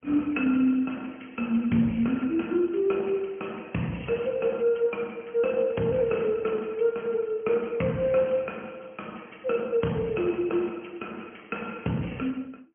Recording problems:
phone line; 86 Hz to 3.2 kHz, AMR-NB

